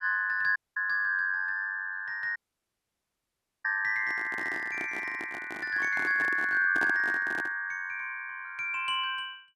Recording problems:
audio cutting out; at 0.5 s and at 2.5 s for 1.5 s
handling noise; from 4 to 7.5 s; peak -4 dB vs average level

